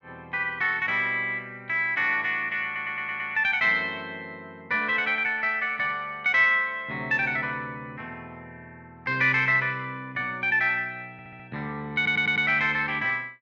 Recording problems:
stutter; at 2.5 s, at 11 s and at 12 s

